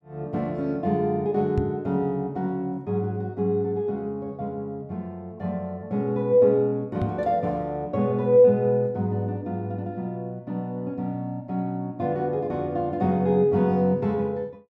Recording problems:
microphone thump; at 1.5 s and at 7 s; peak +3 dB vs average level

